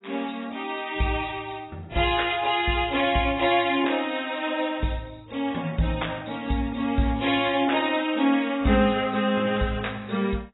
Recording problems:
codec artefacts; AAC, log-spectral distance 7 dB, nothing above 3.9 kHz

